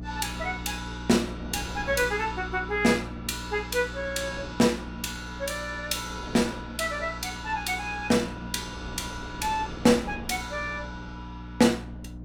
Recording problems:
hum; 60 Hz, harmonics up to 300 Hz, SNR 13 dB
wind noise; below 500 Hz, SNR 18 dB

